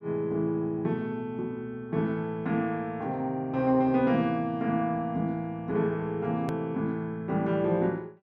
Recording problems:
hard cut with a click; at 6.5 s

